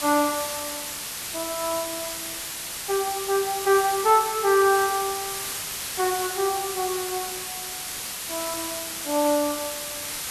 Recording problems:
hiss; slope +1 dB per octave, SNR 5 dB

